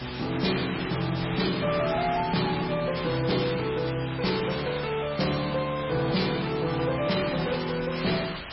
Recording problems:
lossy compression; MP3, log-spectral distance 17 dB, nothing above 5.3 kHz
distorted audio; hard clipping, signal-to-distortion ratio 12 dB
hiss; SNR 9 dB

